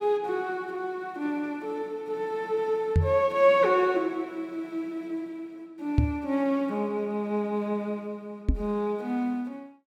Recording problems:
microphone bump; at 3 s, at 6 s and at 8.5 s; peak +9 dB vs average level

